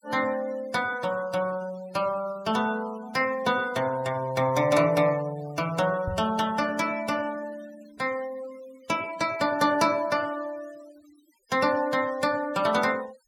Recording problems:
denoising artefacts; signal-to-artefact ratio 20 dB
knock on the microphone; at 6 s; peak -3 dB vs average level

